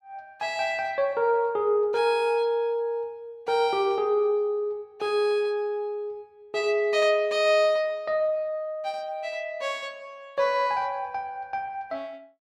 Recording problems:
none

